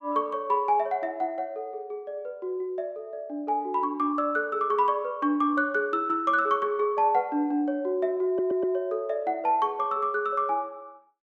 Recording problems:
stutter; at 8.5 s

